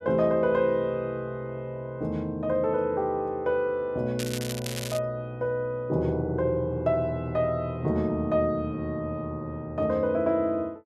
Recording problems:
crackle; at 4 s; loose cable, SNR 9 dB

